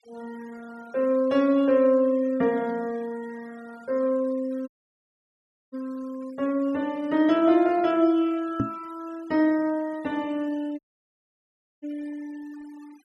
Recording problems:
noise reduction artefacts; signal-to-artefact ratio 26 dB
audio cutting out; at 4.5 s for 1 s and at 11 s for 1 s
microphone thump; at 8.5 s; peak +3 dB vs average level

